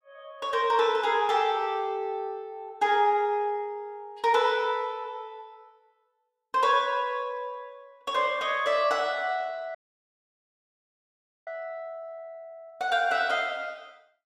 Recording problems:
audio cutting out; at 10 s for 1.5 s

